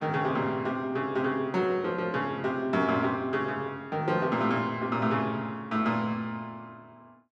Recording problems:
none

